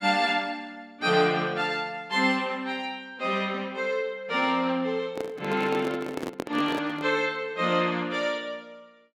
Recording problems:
handling noise; from 5 to 7 s; peak -1 dB vs average level

